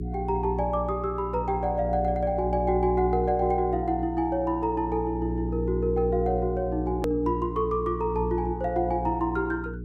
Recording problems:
hum; 60 Hz, harmonics up to 420 Hz, SNR 6 dB
edit click; at 7 s

